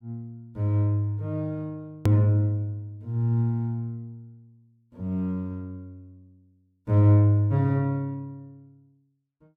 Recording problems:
hard cut with a click; at 2 s

